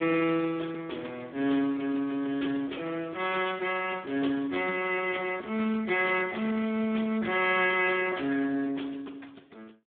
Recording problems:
telephone audio; 240 Hz to 3.5 kHz, Speex

